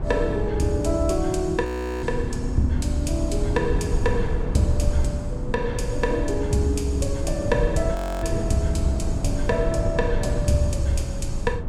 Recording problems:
rumble; below 120 Hz, SNR 3 dB
frozen audio; at 1.5 s and at 8 s

